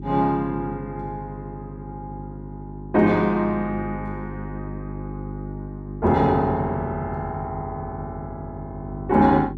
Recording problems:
hum; 50 Hz, harmonics up to 400 Hz, SNR 11 dB

